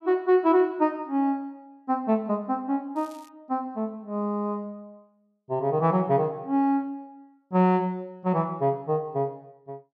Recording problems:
crackle; at 3 s; loose cable, SNR 30 dB

